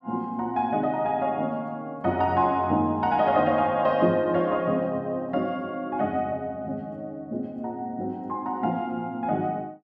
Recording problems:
none

